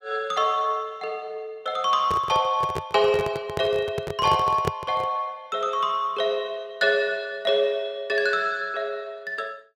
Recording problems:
handling noise; from 2 to 5 s; peak +3 dB vs average level

